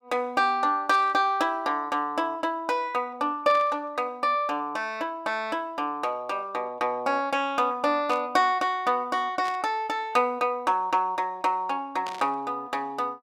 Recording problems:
burst of static; 5 times, first at 1 s; peak -8 dB vs average level

